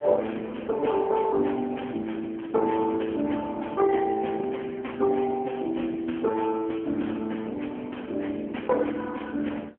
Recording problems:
phone line; 220 Hz to 3.3 kHz, AMR-NB

